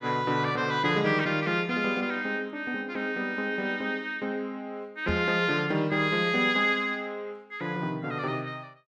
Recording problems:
microphone thump; at 5 s; peak -1 dB vs average level

